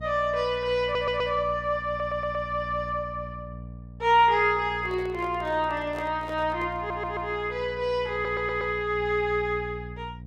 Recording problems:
mains hum; 60 Hz, harmonics up to 480 Hz, SNR 15 dB
audio stuttering; 4 times, first at 1 s
handling noise; from 5 to 7.5 s; peak -9 dB vs average level

